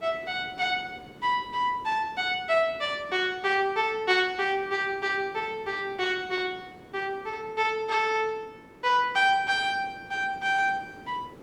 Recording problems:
hiss; slope -9 dB per octave, SNR 22 dB

